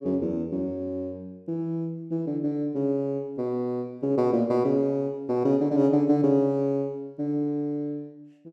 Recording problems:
none

